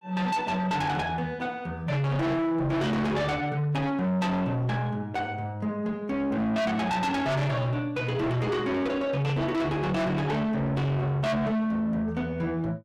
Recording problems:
distortion; soft clipping, signal-to-distortion ratio 6 dB

